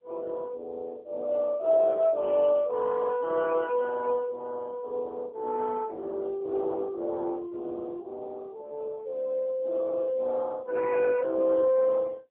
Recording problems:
telephone audio; 260 Hz to 2.9 kHz, AMR-NB

